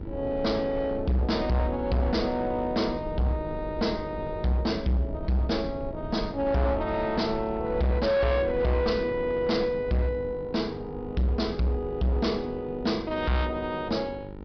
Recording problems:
low-pass filter; nothing above 5.5 kHz
distortion; hard clipping, signal-to-distortion ratio 8 dB
hum; 50 Hz, harmonics up to 1.9 kHz, SNR 16 dB
rumble; below 140 Hz, SNR 15 dB

